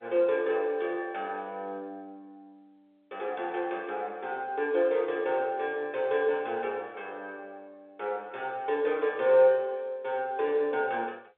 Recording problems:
telephone audio; 300 Hz to 3.6 kHz, G.711

